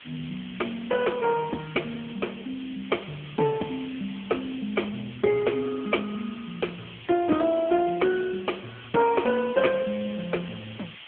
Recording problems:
telephone audio; 170 Hz to 3.3 kHz, AMR-NB
background hiss; SNR 16 dB

